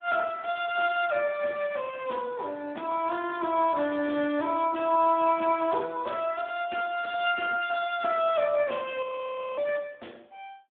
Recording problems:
phone line; 260 Hz to 3.5 kHz, Speex
frozen audio; at 9 s for 0.5 s

